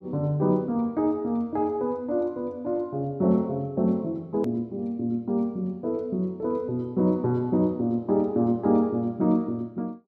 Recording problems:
hard cut with a click; at 4.5 s

